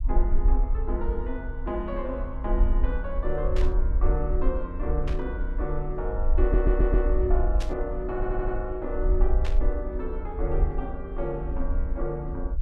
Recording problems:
low-frequency rumble; below 48 Hz, SNR -3 dB
burst of static; 4 times, first at 3.5 s; peak -3 dB vs average level
audio stuttering; at 6.5 s and at 8 s

